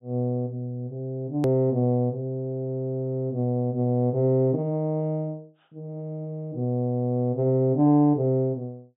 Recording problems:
low-pass filter; nothing above 4 kHz
edit click; at 1.5 s

